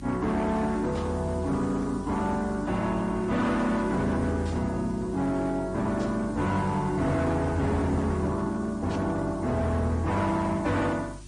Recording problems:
codec artefacts; Opus, then MP3, log-spectral distance 4 dB, nothing above 9.2 kHz
distortion; hard clipping, signal-to-distortion ratio 11 dB
hum; 50 Hz, harmonics up to 350 Hz, SNR 16 dB
hiss; slope +1 dB per octave, SNR 27 dB
burst of static; 4 times, first at 1 s; peak -12 dB vs average level

